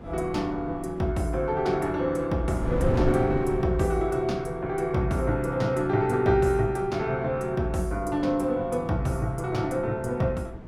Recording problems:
wind noise; below 290 Hz, SNR 10 dB

